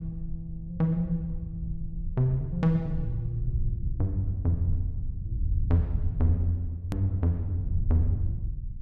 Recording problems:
rumble; below 84 Hz, SNR 5 dB
edit click; at 7 s

